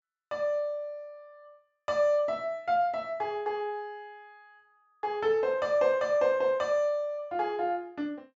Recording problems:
treble missing; nothing above 8 kHz

